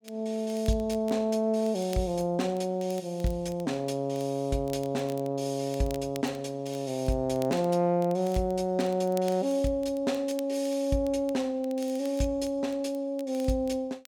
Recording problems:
crackling; vinyl, SNR 23 dB

